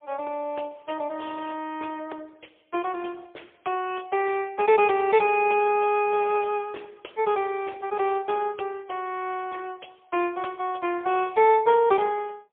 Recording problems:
phone line; 280 Hz to 3.3 kHz, AMR-NB, then MP3

